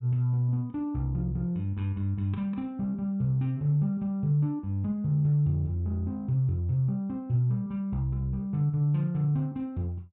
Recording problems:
none

